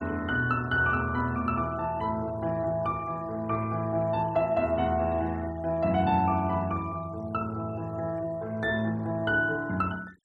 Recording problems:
noise reduction artefacts; signal-to-artefact ratio 24 dB

